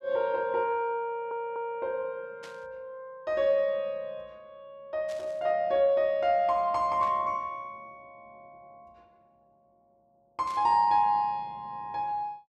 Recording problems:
audio stuttering; at 1 s
static burst; 4 times, first at 2.5 s; peak -14 dB vs average level

